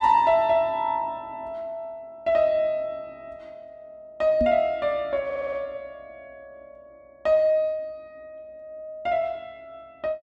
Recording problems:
microphone thump; at 4.5 s; peak 0 dB vs average level
audio stuttering; at 5.5 s

